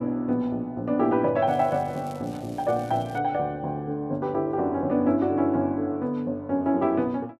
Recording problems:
crackle; from 1.5 to 3 s; loose cable, SNR 26 dB

